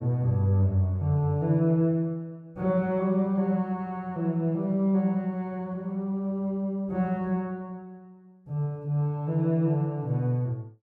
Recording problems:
none

